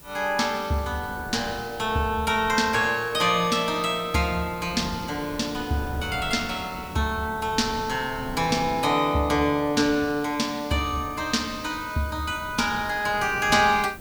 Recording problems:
hiss; SNR 22 dB
wind noise; below 360 Hz, SNR 18 dB

